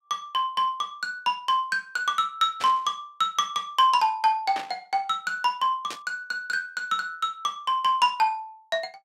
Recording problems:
burst of static; at 2.5 s, at 4.5 s and at 6 s; peak -5 dB vs average level

